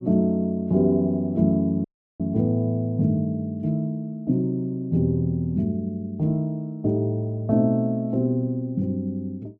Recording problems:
audio cutting out; at 2 s

